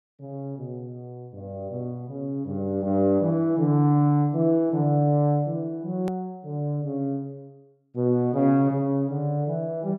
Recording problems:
hard cut with a click; at 6 s

